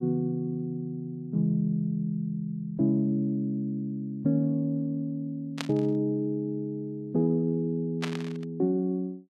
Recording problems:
static burst; at 5.5 s and at 8 s; peak 0 dB vs average level

